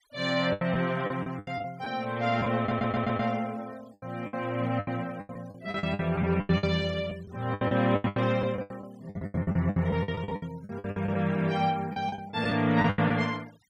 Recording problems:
noise reduction artefacts; signal-to-artefact ratio 26 dB
lost packets; 17% of the sound replaced, filled with the last packet
stutter; at 2.5 s

